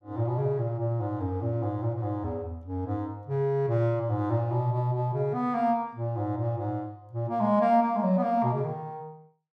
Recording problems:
none

